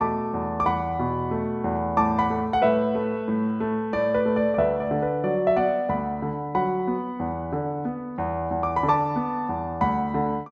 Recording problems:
none

